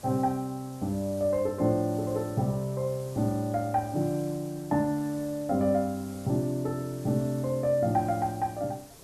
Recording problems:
hiss; SNR 20 dB

